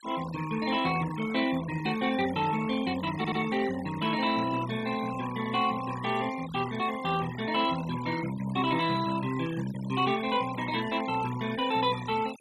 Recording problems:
denoising artefacts; signal-to-artefact ratio 14 dB
stutter; at 3 s

